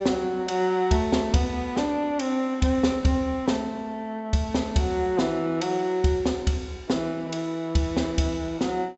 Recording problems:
treble missing; nothing above 7.8 kHz

